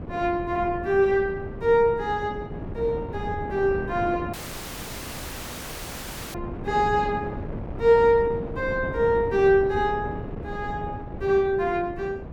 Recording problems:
wind noise; below 380 Hz, SNR 11 dB
dropout; at 4.5 s for 2 s

